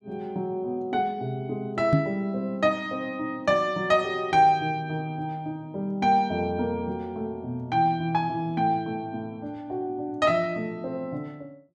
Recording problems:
microphone thump; at 2 s; peak +8 dB vs average level

